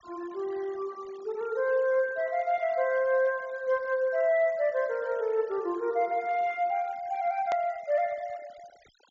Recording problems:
treble cut off; nothing above 7.3 kHz
denoising artefacts; signal-to-artefact ratio 25 dB
edit click; at 7.5 s

